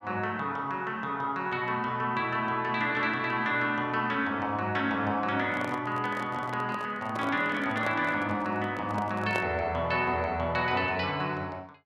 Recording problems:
microphone handling noise; from 5.5 to 9.5 s; peak 0 dB vs average level

